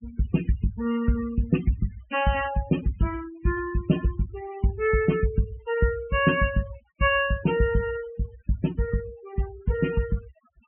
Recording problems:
treble cut off; nothing above 3.1 kHz
noise reduction artefacts; signal-to-artefact ratio 16 dB

